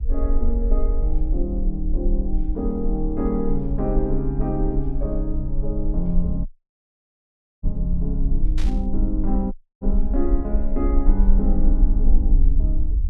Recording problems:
rumble; below 42 Hz, strongest tone 22 Hz, SNR -2 dB
dropout; at 6.5 s for 1 s and at 9.5 s
static burst; at 8.5 s; peak -7 dB vs average level

